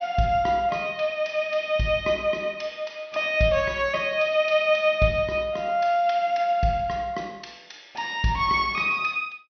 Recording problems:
treble cut off; nothing above 6 kHz

